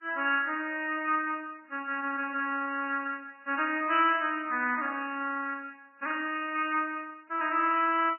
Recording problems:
codec artefacts; MP3, then Vorbis, log-spectral distance 3 dB, nothing above 2.5 kHz

